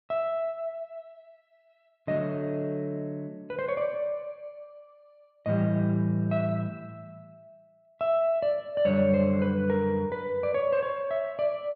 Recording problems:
none

